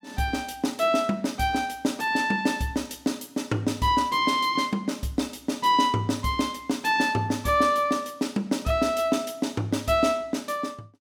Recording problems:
none

